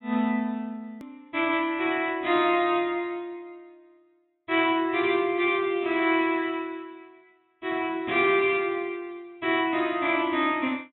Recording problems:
treble cut off; nothing above 3.8 kHz
hard cut with a click; at 1 s

